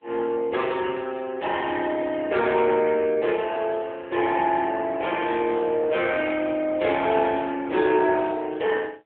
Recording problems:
phone line; 320 Hz to 3.5 kHz, AMR-NB

